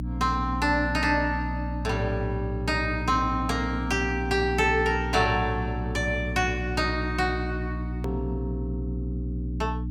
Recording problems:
hum; 60 Hz, harmonics up to 300 Hz, SNR 5 dB
edit click; at 8 s

